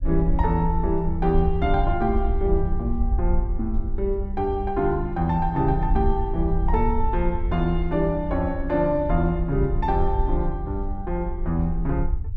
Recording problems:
rumble; below 62 Hz, SNR 4 dB

